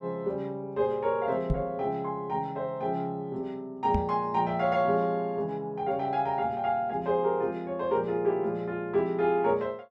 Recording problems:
microphone bump; at 1.5 s and at 4 s; peak +4 dB vs average level

